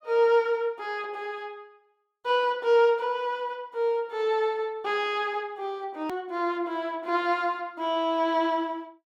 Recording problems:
edit click; at 6 s

